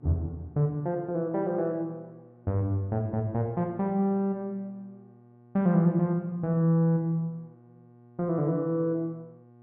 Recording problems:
electrical hum; 60 Hz, harmonics up to 1.2 kHz, SNR 27 dB

